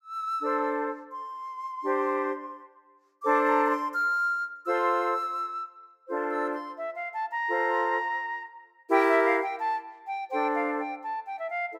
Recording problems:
none

